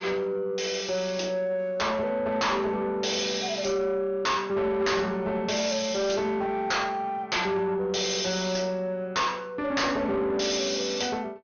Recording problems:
treble missing; nothing above 6.5 kHz
distorted audio; soft clipping, signal-to-distortion ratio 8 dB

